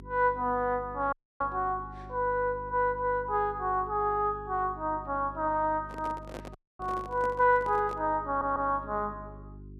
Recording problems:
hum; 50 Hz, harmonics up to 400 Hz, SNR 18 dB
dropout; at 1 s and at 6.5 s
handling noise; from 6 to 8 s; peak -7 dB vs average level
audio stuttering; at 8.5 s

